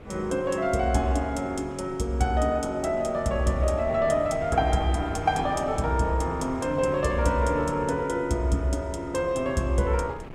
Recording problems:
wind on the microphone; below 470 Hz, SNR 16 dB

